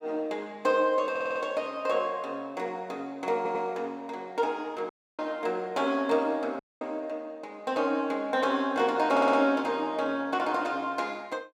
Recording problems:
audio stuttering; at 1 s, at 3.5 s and at 9 s
dropout; at 5 s and at 6.5 s

